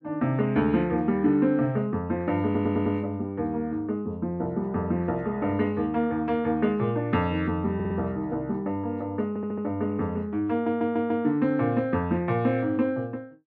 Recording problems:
audio stuttering; 4 times, first at 2.5 s

